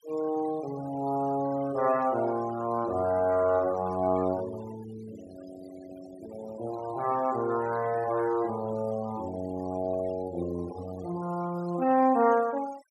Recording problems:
noise reduction artefacts; signal-to-artefact ratio 19 dB

